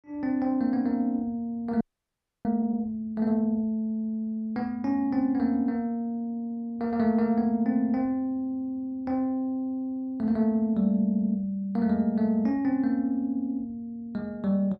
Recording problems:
frozen audio; at 2 s for 0.5 s

